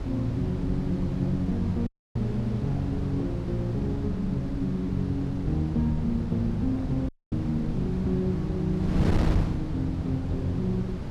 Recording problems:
wind on the microphone; below 230 Hz, SNR 5 dB
dropout; at 2 s and at 7 s

